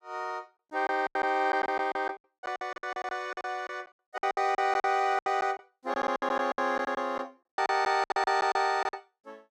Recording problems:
lost packets; 17% of the sound replaced, filled with silence

